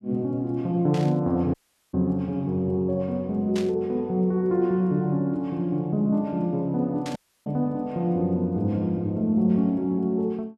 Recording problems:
burst of static; at 1 s, at 3.5 s and at 7 s; peak -8 dB vs average level
audio cutting out; at 1.5 s and at 7 s

